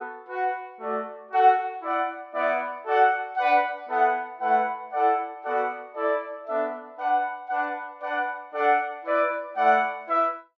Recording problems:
none

